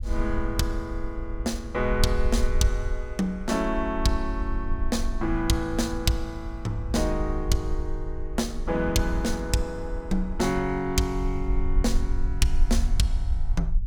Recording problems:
rumble; below 52 Hz, strongest tone 20 Hz, SNR 4 dB

